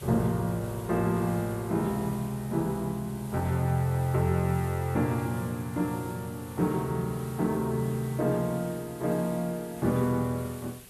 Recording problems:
hiss; SNR 18 dB

